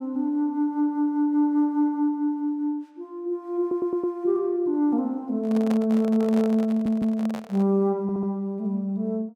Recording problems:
audio stuttering; at 3.5 s, at 6.5 s and at 8 s
handling noise; from 5.5 to 7.5 s; peak -5 dB vs average level

